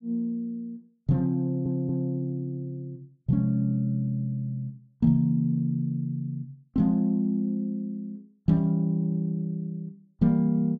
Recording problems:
audio stuttering; at 1.5 s

